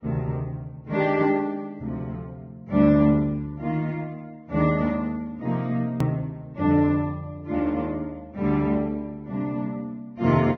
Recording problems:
lossy compression; Vorbis, log-spectral distance 2 dB, nothing above 18.3 kHz
click at an edit; at 6 s

